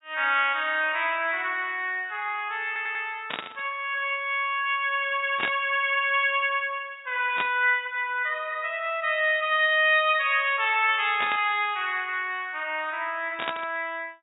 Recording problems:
low-pass filter; nothing above 3.8 kHz
stutter; at 2.5 s
static burst; 5 times, first at 3.5 s; peak 0 dB vs average level

